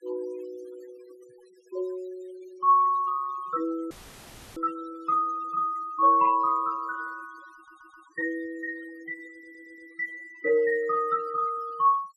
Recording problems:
denoising artefacts; signal-to-artefact ratio 25 dB
dropout; at 4 s for 0.5 s; filled with static
stutter; at 7.5 s and at 9.5 s

